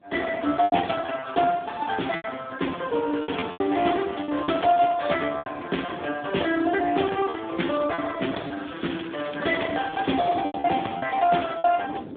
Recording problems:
telephone audio; 220 Hz to 3.5 kHz, Speex
wind noise; below 450 Hz, SNR 21 dB
packet loss; 8% of the sound replaced, filled with repeated pitch periods
crackling; at 4 s and from 8.5 to 11 s; loose cable, SNR 20 dB

